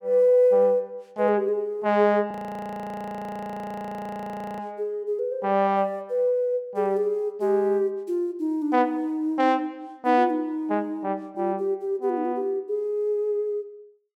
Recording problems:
audio freezing; at 2.5 s for 2.5 s

